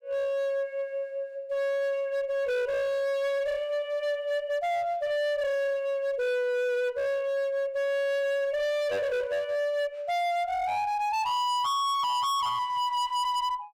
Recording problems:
distortion; hard clipping, uneven, signal-to-distortion ratio 6 dB

